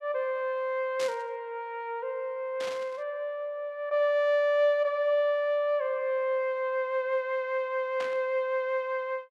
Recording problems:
static burst; at 1 s, at 2.5 s and at 8 s; peak -5 dB vs average level

